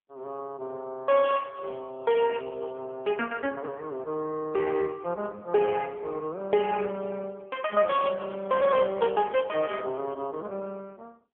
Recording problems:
phone line; 240 Hz to 3.3 kHz, AMR-NB

